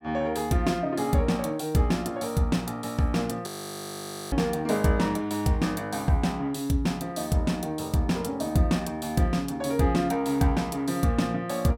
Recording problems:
frozen audio; at 3.5 s for 1 s

